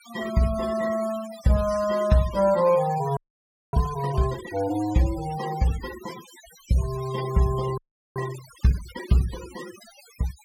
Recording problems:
denoising artefacts; signal-to-artefact ratio 15 dB
audio freezing; at 3 s for 0.5 s and at 8 s

